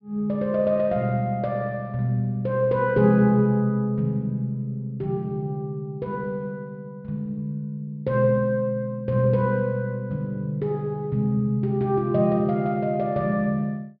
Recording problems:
treble missing; nothing above 5.5 kHz

